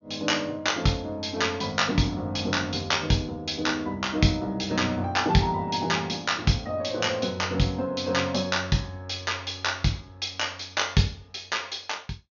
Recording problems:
low-pass filter; nothing above 6.7 kHz

